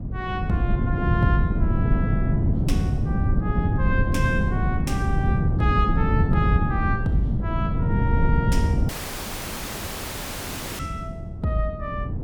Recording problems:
wind on the microphone; below 170 Hz, SNR -5 dB
audio cutting out; at 9 s for 2 s

